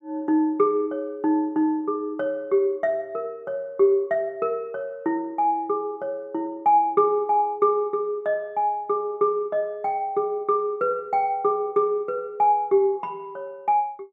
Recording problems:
none

